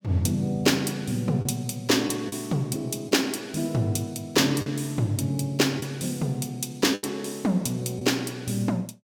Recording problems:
lost packets; 3% of the sound replaced, filled with the last packet

